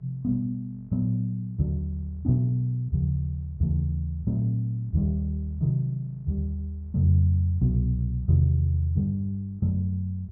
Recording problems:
hum; 50 Hz, harmonics up to 650 Hz, SNR 29 dB

